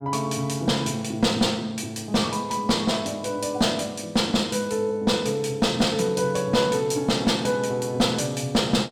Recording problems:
distortion; hard clipping, uneven, signal-to-distortion ratio 11 dB

